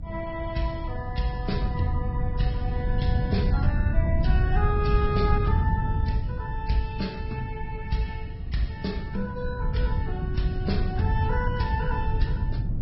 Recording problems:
codec artefacts; Vorbis, then MP2, log-spectral distance 2 dB, nothing above 5.5 kHz
wind noise; below 120 Hz, SNR -2 dB

